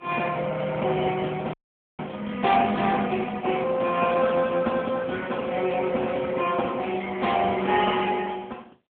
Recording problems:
phone line; 240 Hz to 3.5 kHz, AMR-NB
frozen audio; at 1.5 s

